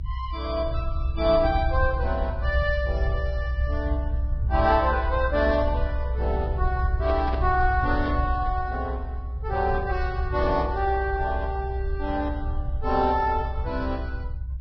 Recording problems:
lossy compression; Vorbis, log-spectral distance 2 dB, nothing above 5 kHz
low-frequency rumble; below 66 Hz, strongest tone 62 Hz, SNR 3 dB
handling noise; from 7 to 8.5 s; peak -5 dB vs average level

